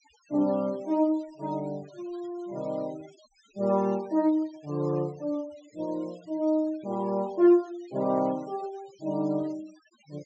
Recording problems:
treble missing; nothing above 8 kHz
noise reduction artefacts; signal-to-artefact ratio 25 dB

